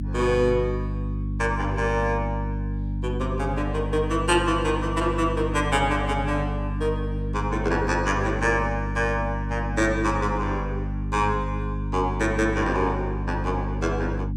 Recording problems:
hum; 50 Hz, harmonics up to 300 Hz, SNR 4 dB

